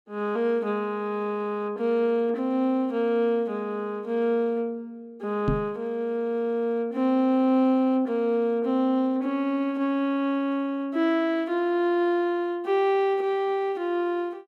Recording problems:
microphone bump; at 5.5 s; peak +3 dB vs average level

